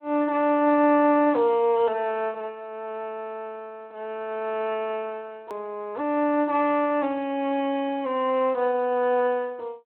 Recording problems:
telephone audio; 320 Hz to 3.2 kHz, Speex
hard cut with a click; at 5.5 s

